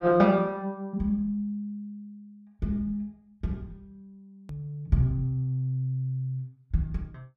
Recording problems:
click at an edit; at 4.5 s

